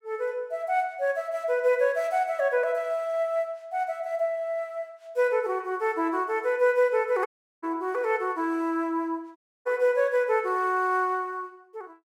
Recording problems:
dropout; at 7.5 s and at 9.5 s

